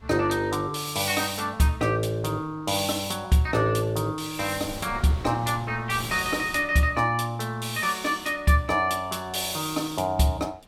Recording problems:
wind noise; below 660 Hz, SNR 21 dB

